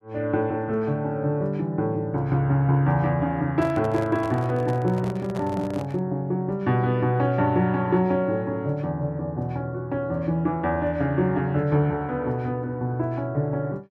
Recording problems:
microphone handling noise; from 3.5 to 6 s; peak -8 dB vs average level

